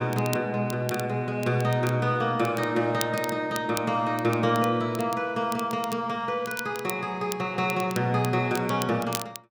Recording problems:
crackling; vinyl, SNR 14 dB

